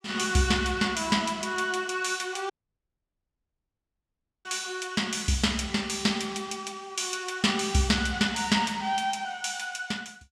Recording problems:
dropout; at 2.5 s for 2 s

